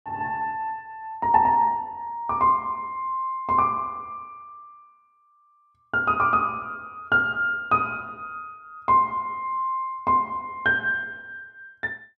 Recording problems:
none

